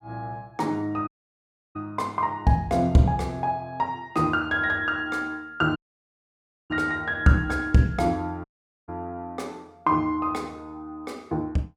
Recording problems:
audio cutting out; at 1 s for 0.5 s, at 6 s for 1 s and at 8.5 s

